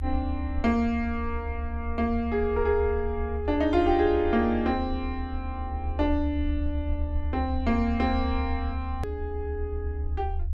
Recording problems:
low-frequency rumble; below 76 Hz, strongest tone 74 Hz, SNR 5 dB
edit click; at 9 s

